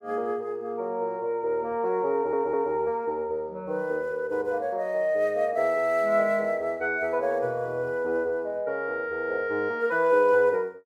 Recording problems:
stutter; at 2 s

